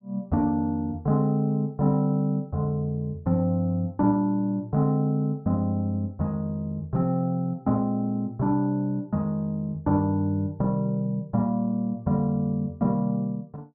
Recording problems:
none

